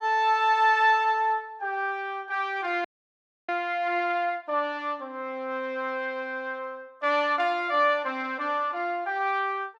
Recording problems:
frozen audio; at 3 s for 0.5 s

